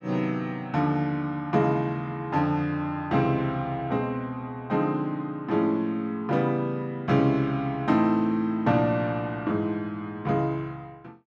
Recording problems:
none

